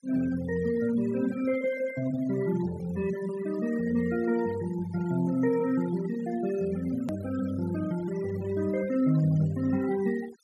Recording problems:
denoising artefacts; signal-to-artefact ratio 17 dB
click at an edit; at 7 s

